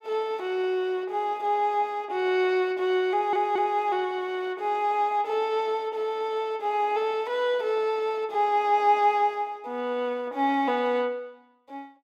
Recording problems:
audio stuttering; at 3 s

